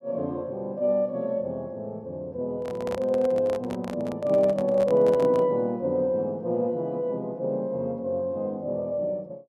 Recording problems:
handling noise; from 2.5 to 5.5 s; peak -6 dB vs average level

